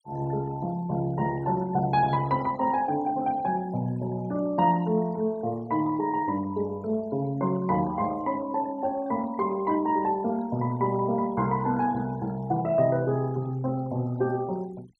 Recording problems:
noise reduction artefacts; signal-to-artefact ratio 23 dB

